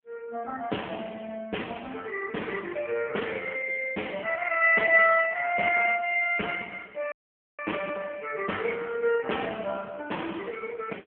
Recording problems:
telephone audio; 240 Hz to 3.2 kHz, AMR-NB
audio cutting out; at 7 s

